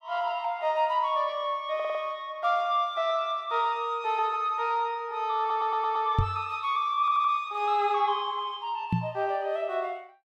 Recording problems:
stutter; at 2 s, at 5.5 s and at 7 s
microphone bump; at 6 s and at 9 s; peak +6 dB vs average level

